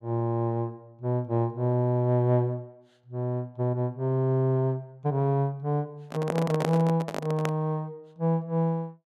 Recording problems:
microphone handling noise; from 6 to 7.5 s; peak +1 dB vs average level

